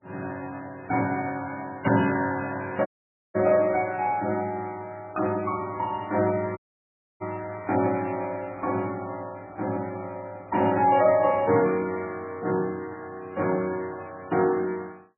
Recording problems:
codec artefacts; MP3, log-spectral distance 3 dB
audio cutting out; at 3 s and at 6.5 s for 0.5 s

